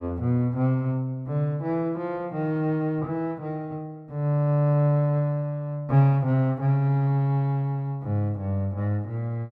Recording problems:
none

